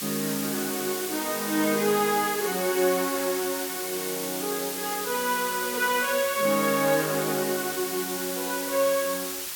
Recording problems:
background hiss; slope +1 dB per octave, SNR 4 dB

